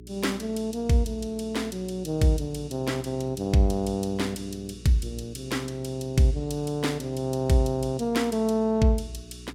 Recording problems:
hum; 60 Hz, harmonics up to 420 Hz, SNR 19 dB

